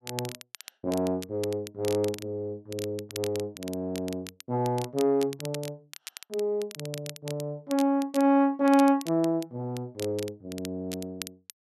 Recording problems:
crackle; vinyl, SNR 14 dB

